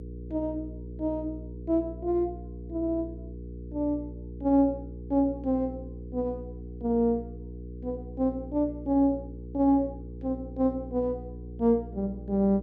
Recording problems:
hum; 60 Hz, harmonics up to 480 Hz, SNR 12 dB

